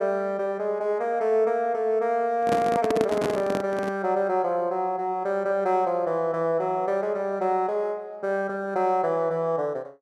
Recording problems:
microphone handling noise; from 2.5 to 4 s; peak +2 dB vs average level

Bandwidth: 12.5 kHz